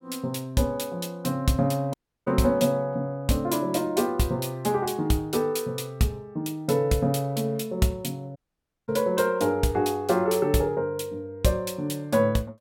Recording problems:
dropout; at 2 s and at 8.5 s for 0.5 s

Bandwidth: 17.5 kHz